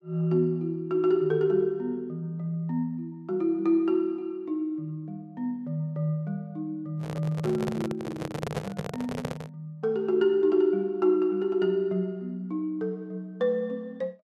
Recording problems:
handling noise; from 7 to 9.5 s; peak +1 dB vs average level

